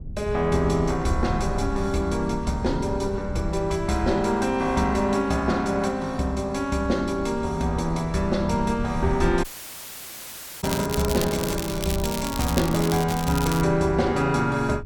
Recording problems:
rumble; below 110 Hz, SNR 11 dB
dropout; at 9.5 s for 1 s
crackling; from 11 to 14 s; loose cable, SNR 8 dB

